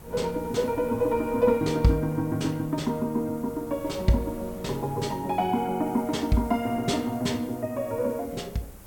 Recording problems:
hiss; slope -2 dB per octave, SNR 23 dB
wind on the microphone; below 430 Hz, SNR 21 dB

